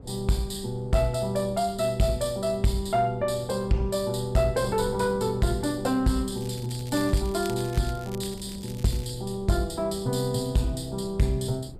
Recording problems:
distorted audio; soft clipping, signal-to-distortion ratio 11 dB
wind on the microphone; below 260 Hz, SNR 17 dB
crackling; from 6.5 to 9 s; loose cable, SNR 19 dB

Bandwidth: 14.5 kHz